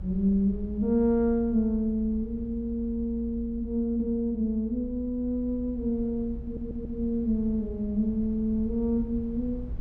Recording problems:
low-frequency rumble; below 68 Hz, strongest tone 56 Hz, SNR 13 dB
audio stuttering; at 6.5 s

